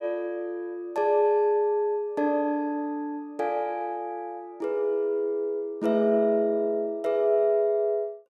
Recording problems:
none

